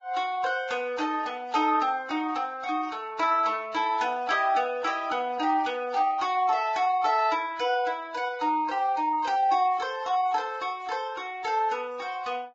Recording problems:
codec artefacts; Vorbis, log-spectral distance 2 dB

